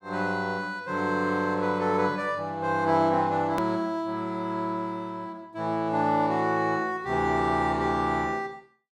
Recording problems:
edit click; at 3.5 s

